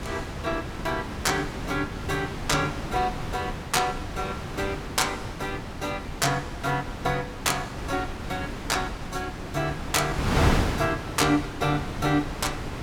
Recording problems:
wind on the microphone; below 920 Hz, SNR 4 dB

